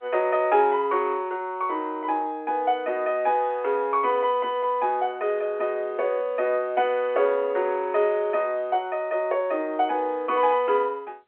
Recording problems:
telephone audio; 320 Hz to 3.3 kHz, G.711

